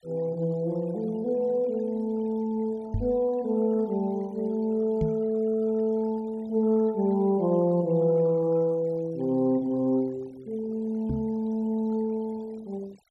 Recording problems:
noise reduction artefacts; signal-to-artefact ratio 27 dB
microphone bump; at 3 s, at 5 s and at 11 s; peak +2 dB vs average level

